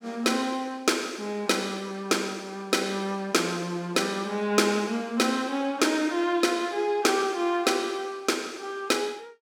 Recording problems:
none

